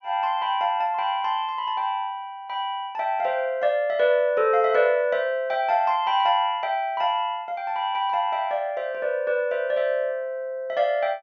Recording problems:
low-pass filter; nothing above 6.4 kHz

